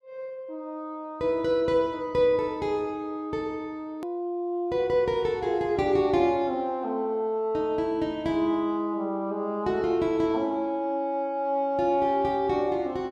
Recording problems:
click at an edit; at 4 s

